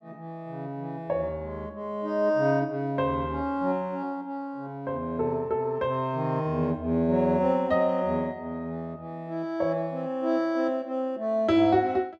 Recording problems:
none

